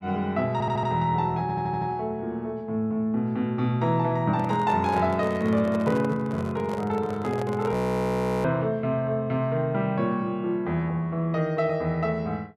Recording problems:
stutter; at 0.5 s and at 1.5 s
handling noise; from 4.5 to 7.5 s; peak -6 dB vs average level
audio freezing; at 7.5 s for 0.5 s

